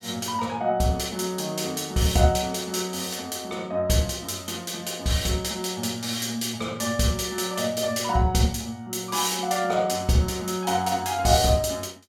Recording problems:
none

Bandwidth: 17 kHz